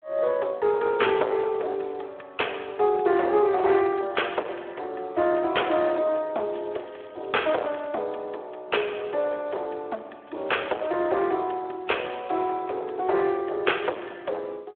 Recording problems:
telephone audio; 340 Hz to 3.4 kHz, Speex
distortion; hard clipping, signal-to-distortion ratio 9 dB
crackle; from 6.5 to 7.5 s and at 10 s; loose cable, SNR 28 dB

